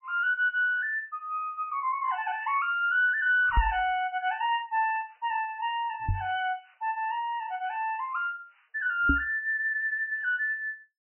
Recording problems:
lossy compression; MP3, log-spectral distance 2 dB, nothing above 2.7 kHz
microphone bump; at 3.5 s, at 6 s and at 9 s; peak +5 dB vs average level

